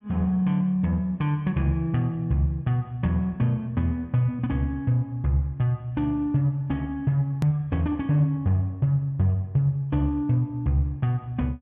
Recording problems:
click at an edit; at 7.5 s

